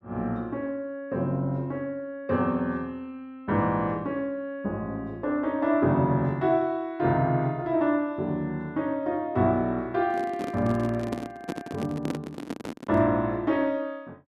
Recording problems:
handling noise; from 10 to 13 s; peak +1 dB vs average level

